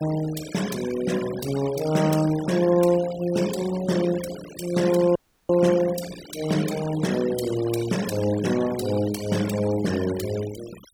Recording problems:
denoising artefacts; signal-to-artefact ratio 14 dB
audio cutting out; at 5 s

